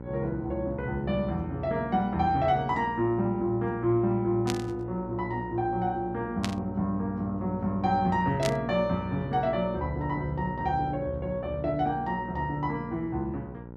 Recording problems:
hum; 60 Hz, harmonics up to 1.4 kHz, SNR 11 dB
burst of static; at 4.5 s, at 6.5 s and at 8.5 s; peak +1 dB vs average level

